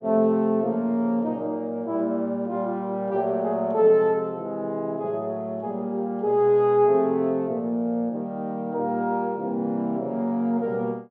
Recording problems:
none

